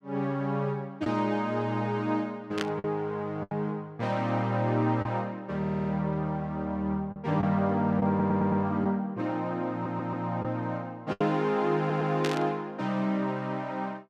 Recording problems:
lost packets; 3% of the sound replaced, filled with the last packet
burst of static; at 2.5 s and at 12 s; peak +1 dB vs average level
stutter; 4 times, first at 5.5 s

